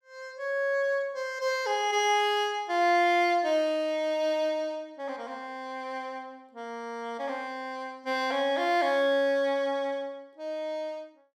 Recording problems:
none

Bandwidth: 16.5 kHz